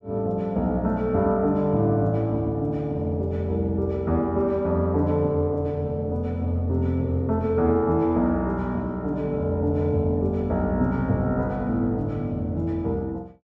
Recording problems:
none

